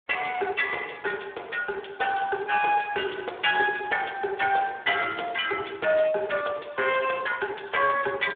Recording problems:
phone line; 340 Hz to 3.6 kHz, Speex

